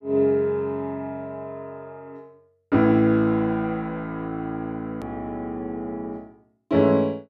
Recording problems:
click at an edit; at 5 s

